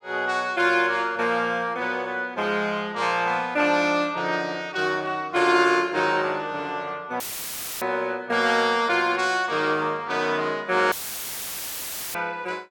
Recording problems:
dropout; at 7 s for 0.5 s and at 11 s for 1 s; filled with static

